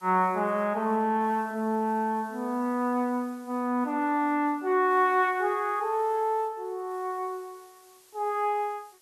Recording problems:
background hiss; slope 0 dB per octave, SNR 29 dB

